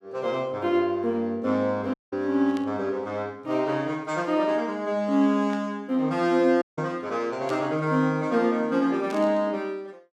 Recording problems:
audio cutting out; at 2 s and at 6.5 s
static burst; 4 times, first at 2.5 s; peak -11 dB vs average level

